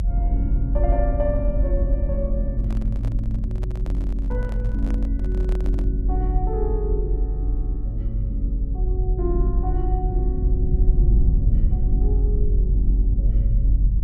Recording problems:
rumble; below 52 Hz, strongest tone 46 Hz, SNR -7 dB
handling noise; from 2.5 to 6 s; peak -5 dB vs average level

